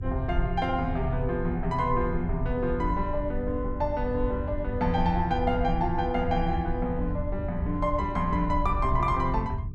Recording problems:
hum; 60 Hz, harmonics up to 420 Hz, SNR 21 dB
low-frequency rumble; below 84 Hz, SNR 6 dB

